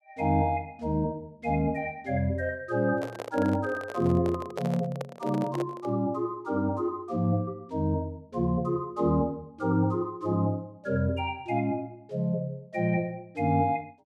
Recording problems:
microphone handling noise; from 3 to 6 s; peak -2 dB vs average level

